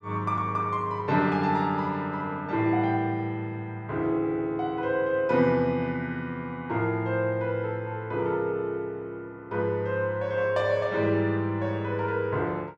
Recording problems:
none

